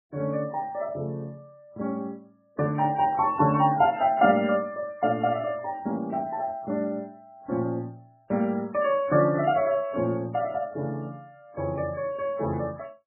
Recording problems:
lossy codec; MP3, log-spectral distance 2 dB, nothing above 2.8 kHz

